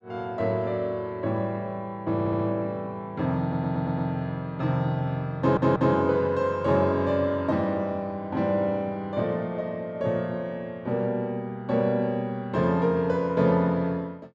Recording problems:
stutter; at 2 s, at 3.5 s and at 5.5 s

